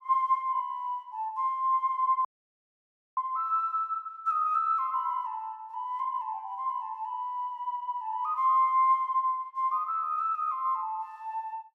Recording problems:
dropout; at 2.5 s for 1 s

